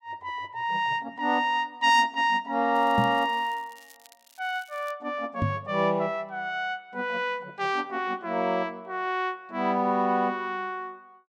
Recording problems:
crackle; from 2.5 to 5 s; loose cable, SNR 27 dB
microphone bump; at 3 s and at 5.5 s; peak +4 dB vs average level

